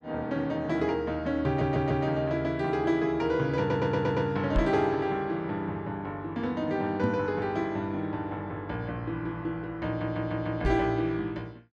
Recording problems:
stutter; at 1.5 s, at 3.5 s and at 10 s
microphone bump; at 4.5 s, at 7 s and at 11 s; peak +4 dB vs average level

